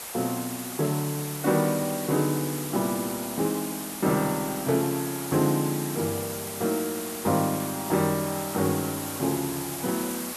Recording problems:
hiss; SNR 6 dB

